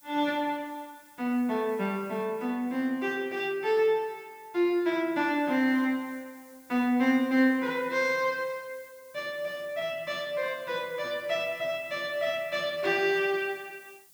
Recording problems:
hiss; SNR 26 dB

